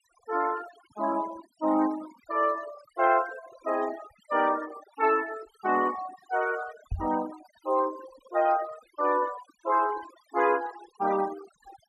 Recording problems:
denoising artefacts; signal-to-artefact ratio 15 dB
microphone bump; at 7 s; peak -2 dB vs average level

